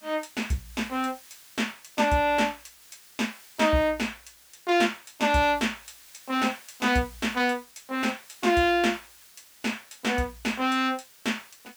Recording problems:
hiss; slope +2 dB per octave, SNR 23 dB

